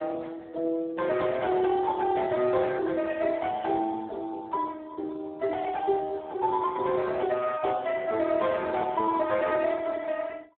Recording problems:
phone line; 260 Hz to 3.1 kHz, Speex

